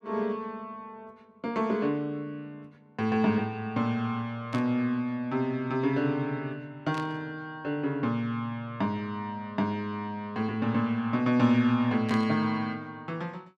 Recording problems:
burst of static; at 4.5 s, at 7 s and at 12 s; peak -7 dB vs average level

